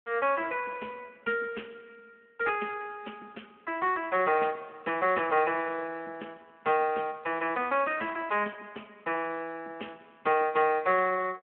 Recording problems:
phone line; 240 Hz to 3.1 kHz, Speex

